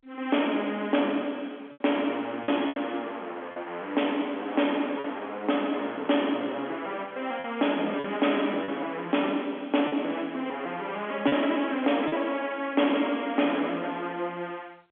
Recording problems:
telephone audio; 240 Hz to 3.4 kHz, G.711
distorted audio; soft clipping, signal-to-distortion ratio 10 dB
lost packets; 3% of the sound replaced, filled with repeated pitch periods

